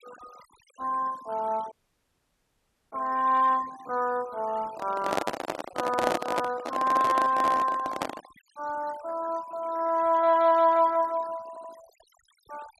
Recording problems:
denoising artefacts; signal-to-artefact ratio 22 dB
lost packets; 8% of the sound replaced, filled with repeated pitch periods
dropout; at 1.5 s for 1 s
microphone handling noise; from 4.5 to 8.5 s; peak +3 dB vs average level
stutter; at 11 s

